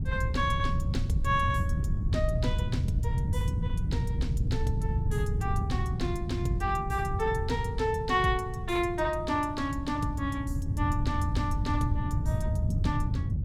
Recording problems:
wind on the microphone; below 130 Hz, SNR -1 dB

